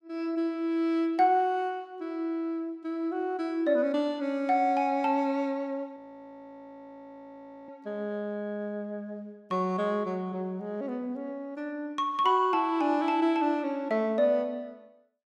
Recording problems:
frozen audio; at 6 s for 1.5 s

